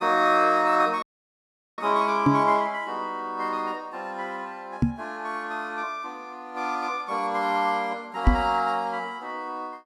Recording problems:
dropout; at 1 s for 1 s
microphone bump; at 2.5 s, at 5 s and at 8.5 s; peak +10 dB vs average level

